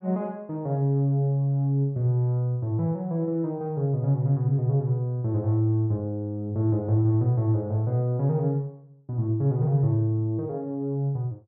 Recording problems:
none

